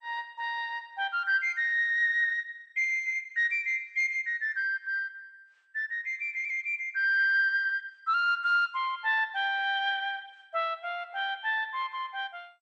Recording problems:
lossy compression; MP2, log-spectral distance 3 dB

